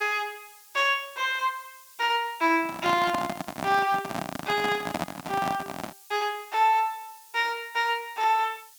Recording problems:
background hiss; slope +5 dB per octave, SNR 22 dB
microphone handling noise; from 2.5 to 6 s; peak +1 dB vs average level

